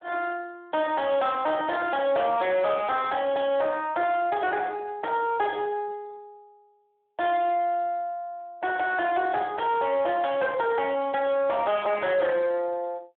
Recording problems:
telephone audio; 280 Hz to 3.4 kHz, Speex
distorted audio; soft clipping, signal-to-distortion ratio 10 dB

